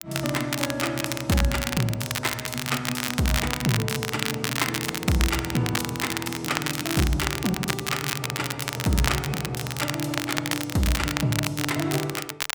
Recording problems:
crackling; vinyl, SNR 2 dB

